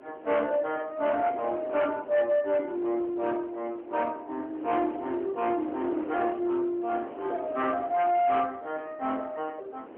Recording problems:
phone line; 240 Hz to 3.1 kHz, AMR-NB
distortion; hard clipping, signal-to-distortion ratio 12 dB
wind noise; below 730 Hz, SNR 15 dB

